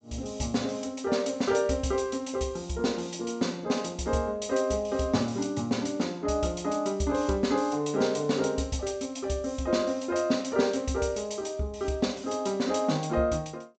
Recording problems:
treble missing; nothing above 8 kHz

